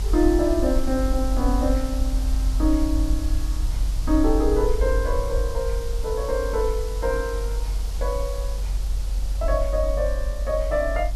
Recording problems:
background hiss; SNR 14 dB
low-frequency rumble; below 50 Hz, strongest tone 46 Hz, SNR 1 dB

